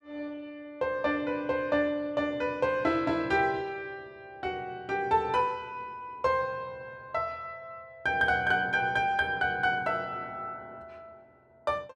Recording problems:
none

